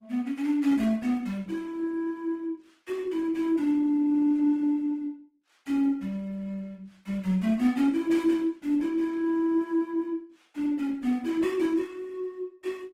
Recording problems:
lossy compression; Opus, log-spectral distance 2 dB, nothing above 16 kHz

